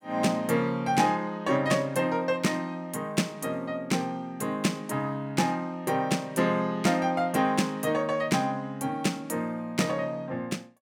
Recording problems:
none

